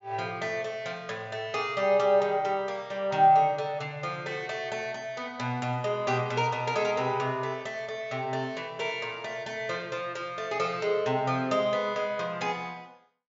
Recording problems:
treble missing; nothing above 7.3 kHz

